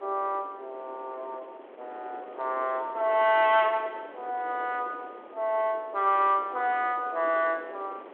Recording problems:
telephone audio; 280 Hz to 3.5 kHz, G.726
wind on the microphone; below 830 Hz, SNR 18 dB

